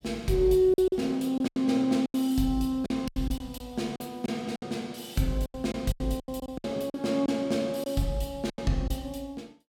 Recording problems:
packet loss; 12% of the sound replaced, filled with silence

